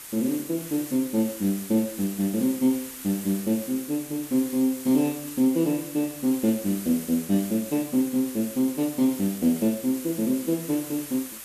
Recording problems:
hiss; slope 0 dB per octave, SNR 12 dB

